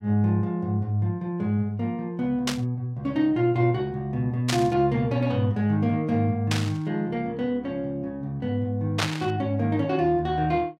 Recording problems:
burst of static; 4 times, first at 2.5 s; peak +4 dB vs average level

